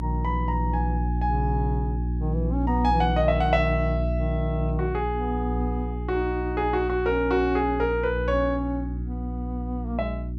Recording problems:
hum; 60 Hz, harmonics up to 360 Hz, SNR 2 dB

